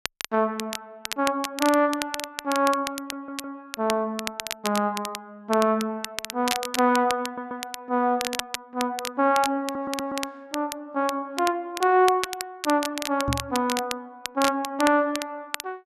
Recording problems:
crackle; vinyl, SNR 8 dB
stutter; at 3 s, at 7 s and at 9.5 s
microphone bump; at 13 s; peak 0 dB vs average level

